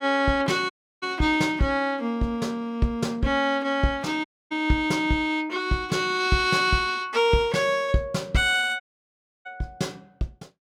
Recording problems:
dropout; at 0.5 s, at 4.5 s and at 9 s for 0.5 s

